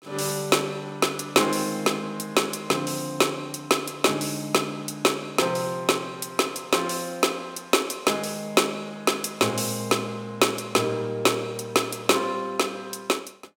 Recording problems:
none

